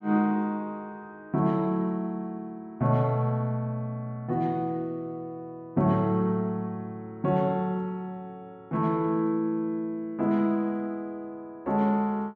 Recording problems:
none

